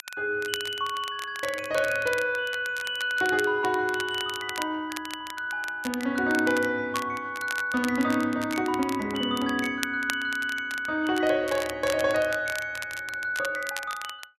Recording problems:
crackling; vinyl, SNR 12 dB

